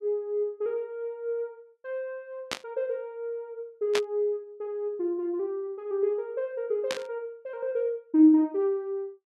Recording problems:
static burst; at 2.5 s, at 4 s and at 7 s; peak +3 dB vs average level

